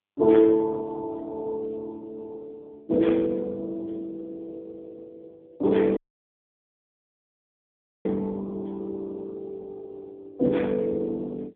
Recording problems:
telephone audio; 260 Hz to 3.4 kHz, AMR-NB
dropout; at 6 s for 2 s

